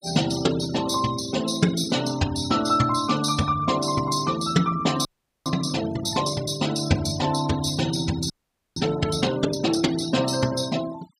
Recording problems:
denoising artefacts; signal-to-artefact ratio 14 dB
frozen audio; at 5 s and at 8.5 s

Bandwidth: 15.5 kHz